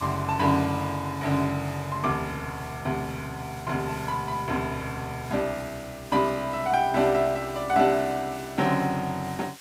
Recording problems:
background hiss; slope +2 dB per octave, SNR 19 dB

